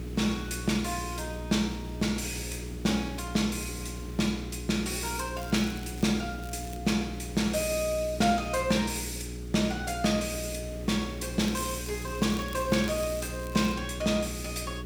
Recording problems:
hum; 60 Hz, harmonics up to 420 Hz, SNR 9 dB
hiss; SNR 17 dB
crackling; at 5.5 s, at 6.5 s and from 11 to 14 s; loose cable, SNR 18 dB

